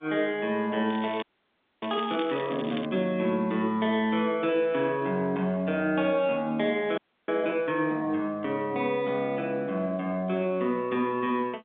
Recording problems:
telephone audio; 170 Hz to 3.7 kHz, G.711
crackle; from 1 to 3 s; loose cable, SNR 16 dB
audio freezing; at 1 s for 0.5 s and at 7 s

